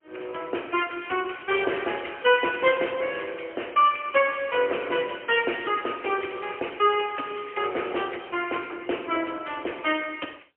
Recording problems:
phone line; 260 Hz to 3.2 kHz, AMR-NB, then MP3
crackling; from 1.5 to 3.5 s and from 5.5 to 7.5 s; loose cable, SNR 20 dB

